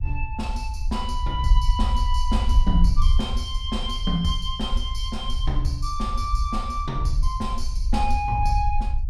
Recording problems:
rumble; below 58 Hz, SNR -1 dB

